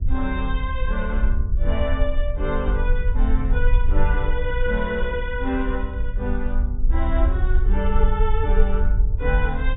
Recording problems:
treble cut off; nothing above 4 kHz
low-frequency rumble; below 52 Hz, SNR -4 dB
handling noise; from 4 to 6 s; peak -10 dB vs average level

